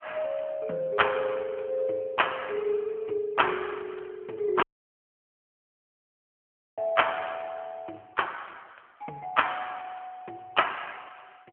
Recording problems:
telephone audio; 190 Hz to 3.3 kHz, AMR-NB
dropout; at 4.5 s for 2 s

